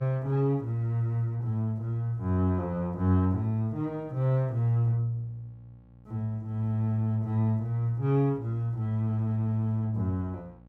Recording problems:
hum; 60 Hz, harmonics up to 1.1 kHz, SNR 27 dB

